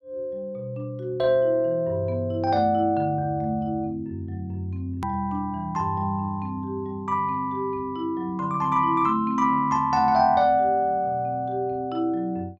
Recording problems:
edit click; at 5 s

